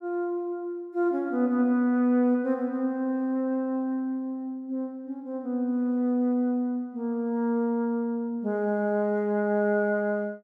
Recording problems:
none

